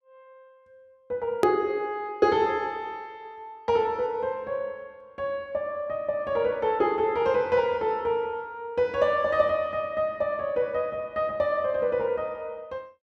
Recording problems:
hard cut with a click; at 1.5 s

